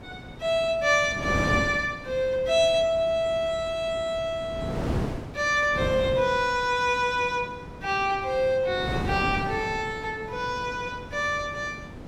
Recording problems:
wind on the microphone; below 480 Hz, SNR 10 dB

